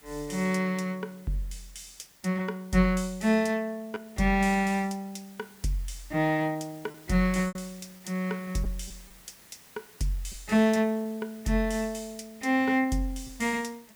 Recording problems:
background hiss; slope -1 dB per octave, SNR 24 dB
packet loss; 1.9% of the sound replaced, filled with repeated pitch periods

